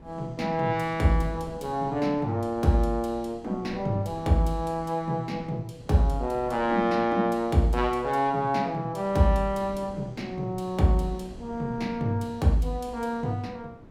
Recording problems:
wind on the microphone; below 350 Hz, SNR 20 dB

